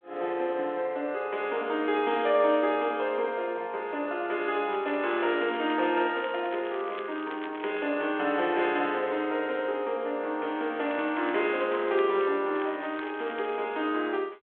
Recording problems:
telephone audio; 320 Hz to 3.5 kHz, G.726
crackling; from 4.5 to 8 s, from 11 to 12 s and from 13 to 14 s; loose cable, SNR 19 dB

